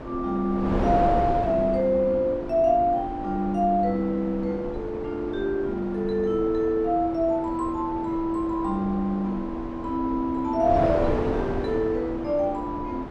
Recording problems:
wind noise; below 670 Hz, SNR 8 dB

